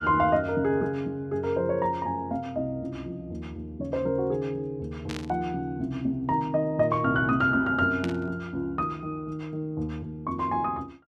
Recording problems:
burst of static; at 5 s and at 8 s; peak -4 dB vs average level

